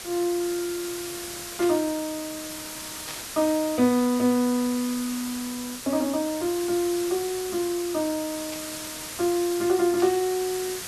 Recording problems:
background hiss; slope 0 dB per octave, SNR 9 dB
static burst; 4 times, first at 1.5 s; peak -8 dB vs average level

